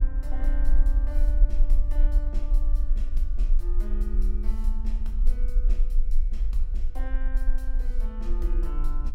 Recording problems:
low-frequency rumble; below 40 Hz, strongest tone 18 Hz, SNR -15 dB
wind on the microphone; below 90 Hz, SNR 7 dB

